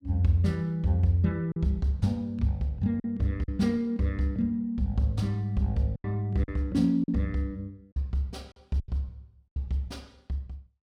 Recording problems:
lost packets; 5% of the sound replaced, filled with silence

